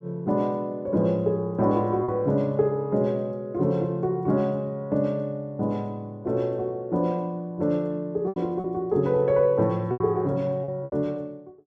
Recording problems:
packet loss; 3% of the sound replaced, filled with repeated pitch periods

